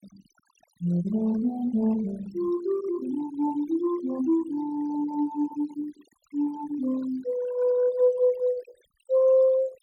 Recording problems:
denoising artefacts; signal-to-artefact ratio 20 dB

